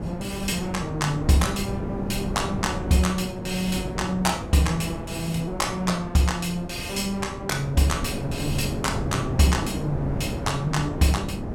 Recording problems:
wind on the microphone; below 350 Hz, SNR 6 dB

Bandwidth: 17 kHz